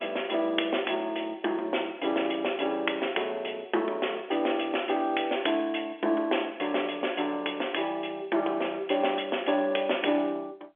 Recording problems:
telephone audio; 260 Hz to 3.4 kHz, G.711

